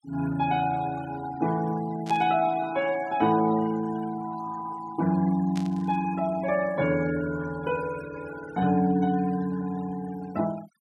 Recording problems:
noise reduction artefacts; signal-to-artefact ratio 18 dB
burst of static; at 2 s and at 5.5 s; peak -9 dB vs average level

